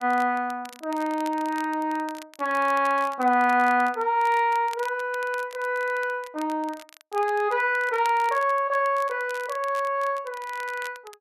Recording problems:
crackle; vinyl, SNR 21 dB

